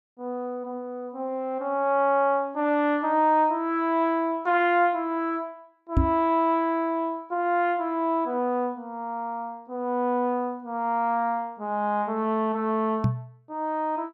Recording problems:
microphone thump; at 6 s and at 13 s; peak +7 dB vs average level

